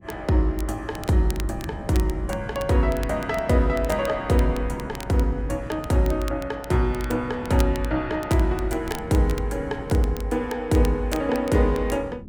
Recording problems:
wind noise; below 220 Hz, SNR 16 dB
crackle; vinyl, SNR 19 dB

